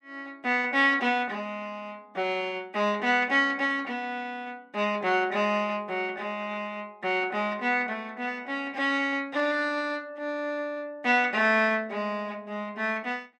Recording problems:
none

